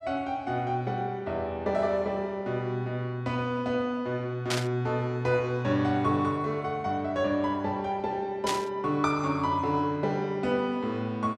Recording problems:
static burst; at 4.5 s and at 8.5 s; peak +3 dB vs average level

